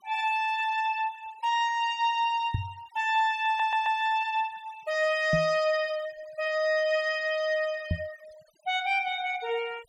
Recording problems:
denoising artefacts; signal-to-artefact ratio 24 dB
microphone thump; at 2.5 s, at 5.5 s and at 8 s; peak +2 dB vs average level
stutter; at 3.5 s

